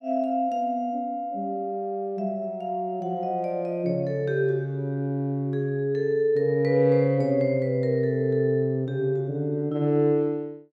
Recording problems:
none

